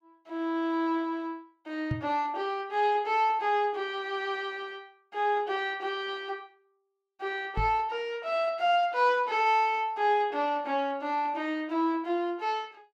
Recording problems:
microphone bump; at 2 s and at 7.5 s; peak +1 dB vs average level

